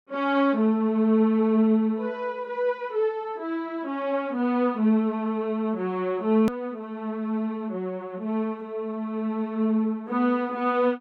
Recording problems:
edit click; at 6.5 s

